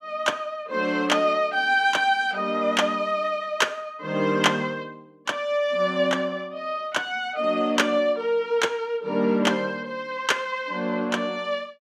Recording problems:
none

